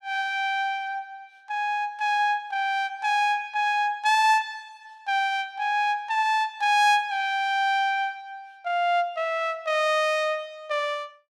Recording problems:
none

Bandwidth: 14 kHz